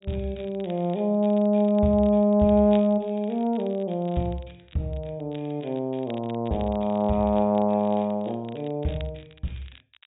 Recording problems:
treble cut off; nothing above 4 kHz
crackle; vinyl, SNR 27 dB

